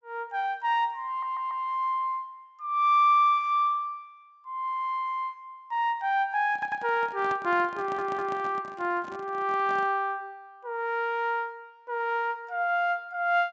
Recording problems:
low-pass filter; nothing above 8 kHz
stutter; at 1 s, at 6.5 s and at 8 s
handling noise; from 6.5 to 10 s; peak -9 dB vs average level

